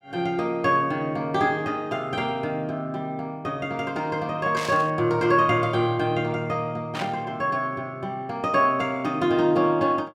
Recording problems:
static burst; at 4.5 s and at 7 s; peak -4 dB vs average level

